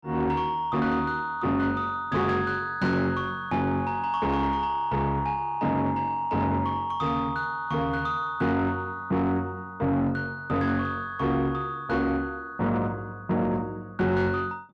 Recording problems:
distorted audio; soft clipping, signal-to-distortion ratio 12 dB

